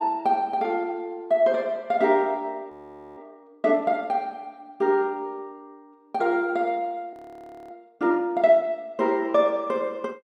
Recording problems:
audio freezing; at 2.5 s and at 7 s for 0.5 s

